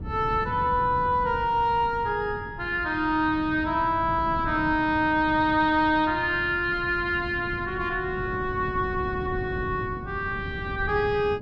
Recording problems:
wind on the microphone; below 210 Hz, SNR 12 dB

